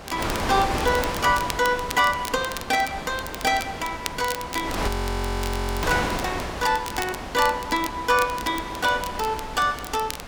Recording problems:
wind on the microphone; below 1.6 kHz, SNR 6 dB
crackle; vinyl, SNR 13 dB
audio freezing; at 5 s for 1 s

